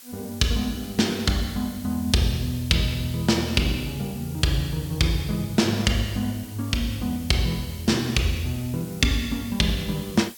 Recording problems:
background hiss; slope +2 dB per octave, SNR 18 dB

